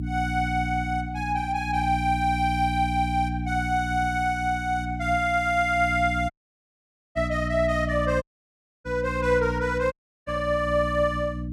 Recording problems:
mains hum; 60 Hz, harmonics up to 300 Hz, SNR 6 dB
audio cutting out; at 6.5 s for 1 s, at 8 s for 0.5 s and at 10 s

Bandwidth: 16 kHz